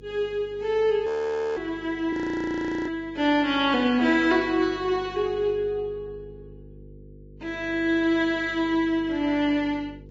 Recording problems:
lossy codec; Vorbis, log-spectral distance 2 dB
hum; 50 Hz, harmonics up to 500 Hz, SNR 22 dB
audio freezing; at 1 s and at 2 s for 0.5 s

